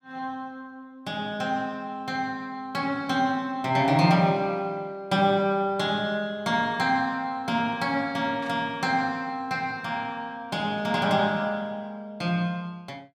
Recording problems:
burst of static; at 8.5 s; peak -14 dB vs average level

